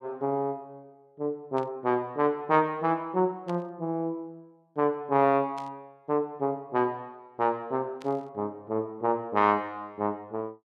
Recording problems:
static burst; 4 times, first at 1.5 s; peak -14 dB vs average level

